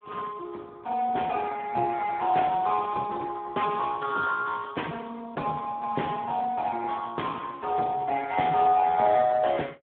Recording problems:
telephone audio; 190 Hz to 2.4 kHz, Speex

